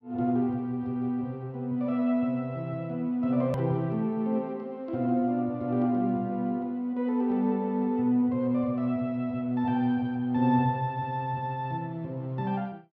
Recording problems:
hard cut with a click; at 3.5 s

